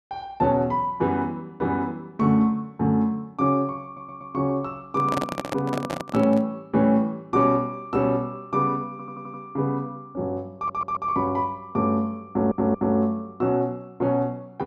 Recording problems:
stutter; 4 times, first at 4 s
handling noise; from 5 to 6.5 s; peak 0 dB vs average level

